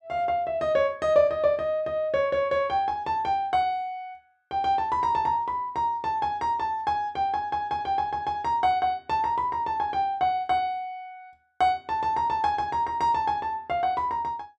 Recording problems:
none

